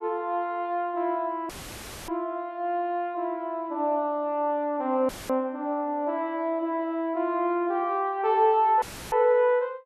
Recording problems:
audio cutting out; at 1.5 s for 0.5 s, at 5 s and at 9 s; filled with static

